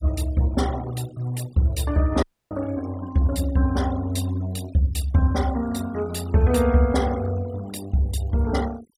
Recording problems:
denoising artefacts; signal-to-artefact ratio 19 dB
audio cutting out; at 2 s

